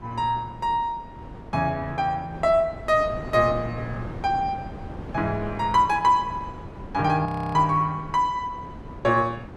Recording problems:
wind noise; below 460 Hz, SNR 15 dB
frozen audio; at 7.5 s

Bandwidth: 13 kHz